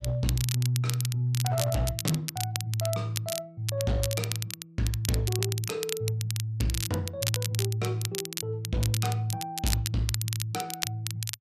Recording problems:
distorted audio; hard clipping, uneven, signal-to-distortion ratio 11 dB
crackle; vinyl, SNR 5 dB

